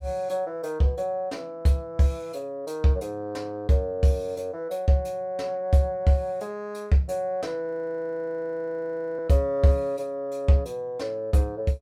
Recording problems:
frozen audio; at 7.5 s for 1.5 s

